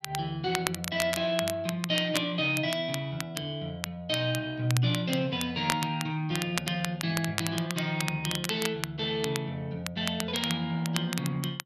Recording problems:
crackling; vinyl, SNR 7 dB

